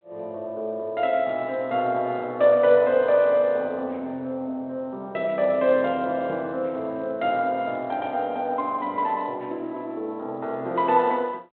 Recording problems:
phone line; 190 Hz to 3.6 kHz, G.726

